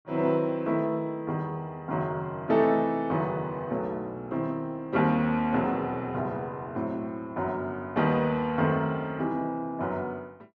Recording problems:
none

